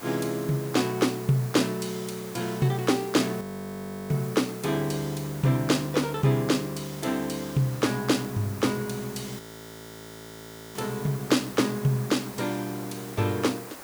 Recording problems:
background hiss; slope -4 dB per octave, SNR 15 dB
frozen audio; at 3.5 s for 0.5 s and at 9.5 s for 1.5 s

